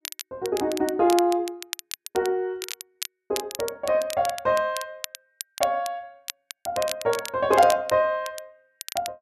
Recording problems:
crackling; vinyl, SNR 12 dB

